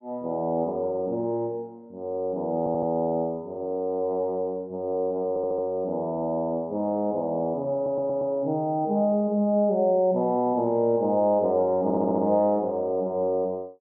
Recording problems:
audio stuttering; 4 times, first at 2.5 s

